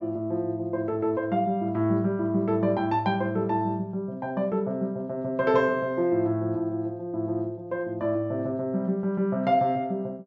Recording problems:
low-pass filter; nothing above 8 kHz

